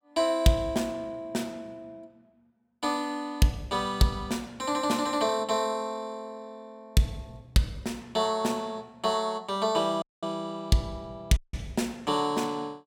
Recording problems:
dropout; at 10 s and at 11 s

